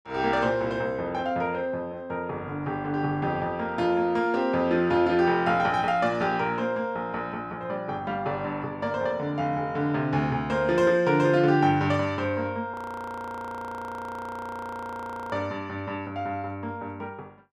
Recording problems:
audio freezing; at 13 s for 2.5 s

